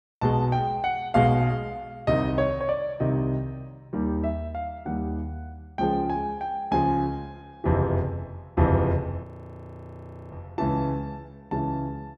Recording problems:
audio freezing; at 9 s for 1 s

